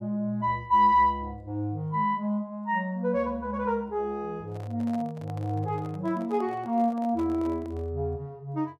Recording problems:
handling noise; from 4.5 to 8 s; peak -12 dB vs average level

